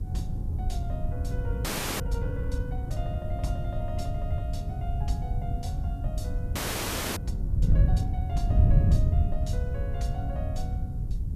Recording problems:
electrical hum; 50 Hz, harmonics up to 500 Hz, SNR 25 dB
hiss; SNR 27 dB
wind on the microphone; below 110 Hz, SNR -10 dB
frozen audio; at 1.5 s and at 6.5 s for 0.5 s

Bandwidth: 14.5 kHz